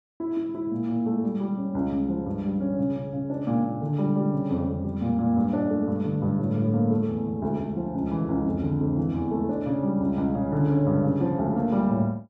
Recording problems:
none

